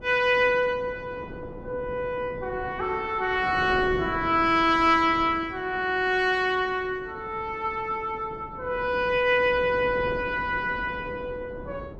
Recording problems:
wind noise; below 450 Hz, SNR 16 dB

